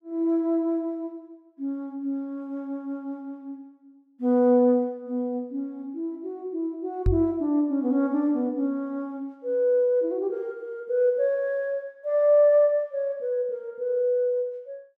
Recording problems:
microphone bump; at 7 s; peak +5 dB vs average level

